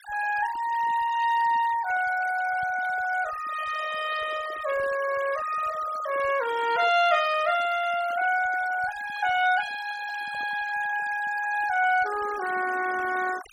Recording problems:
noise reduction artefacts; signal-to-artefact ratio 15 dB

